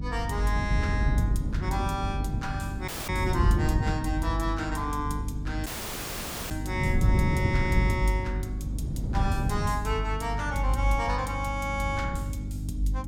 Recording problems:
hum; 50 Hz, harmonics up to 300 Hz, SNR 4 dB
wind on the microphone; below 160 Hz, SNR 2 dB
dropout; at 3 s and at 5.5 s for 1 s

